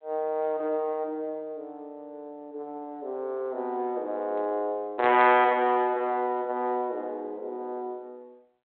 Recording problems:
phone line; 320 Hz to 3.6 kHz, G.726

